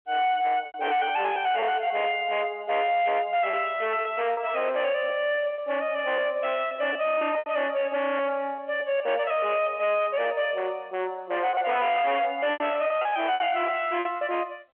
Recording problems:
telephone audio; 300 Hz to 3.3 kHz, G.711
distorted audio; hard clipping, signal-to-distortion ratio 8 dB
packet loss; 8% of the sound replaced, filled with repeated pitch periods

